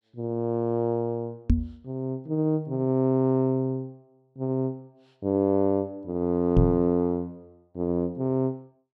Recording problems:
microphone thump; at 1.5 s and at 6.5 s; peak +9 dB vs average level

